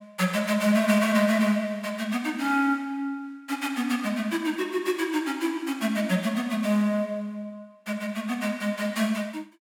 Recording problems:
none

